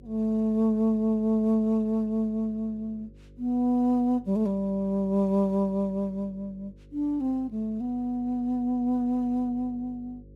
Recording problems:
electrical hum; 50 Hz, harmonics up to 550 Hz, SNR 25 dB

